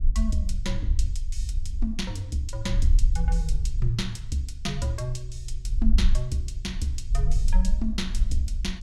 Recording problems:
rumble; below 50 Hz, SNR -2 dB

